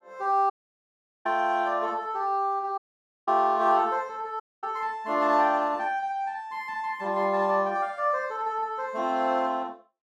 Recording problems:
dropout; at 0.5 s for 1 s, at 3 s and at 4.5 s

